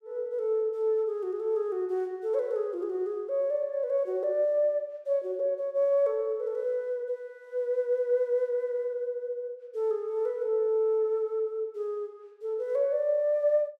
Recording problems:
none

